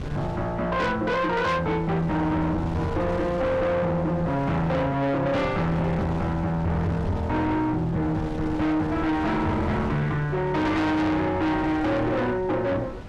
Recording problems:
distortion; soft clipping, signal-to-distortion ratio 7 dB
wind noise; below 410 Hz, SNR 11 dB

